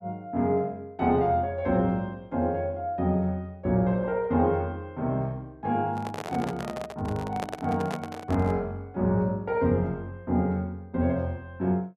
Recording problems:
microphone handling noise; from 6 to 8.5 s; peak -2 dB vs average level

